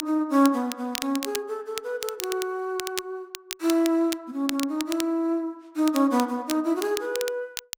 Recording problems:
crackle; vinyl, SNR 10 dB

